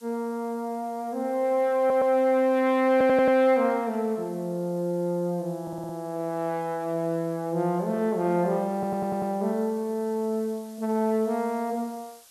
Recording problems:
hiss; slope +1 dB per octave, SNR 27 dB
stutter; 4 times, first at 2 s

